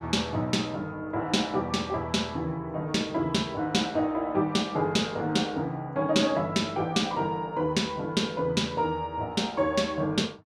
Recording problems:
none

